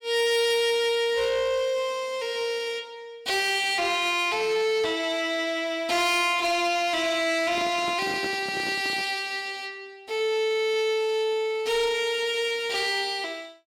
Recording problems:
distorted audio; soft clipping, signal-to-distortion ratio 11 dB
handling noise; from 7.5 to 9 s; peak -6 dB vs average level

